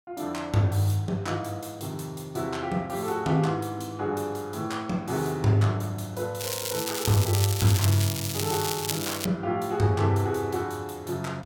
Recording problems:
crackling; from 6.5 to 9.5 s; loose cable, SNR 3 dB

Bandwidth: 17 kHz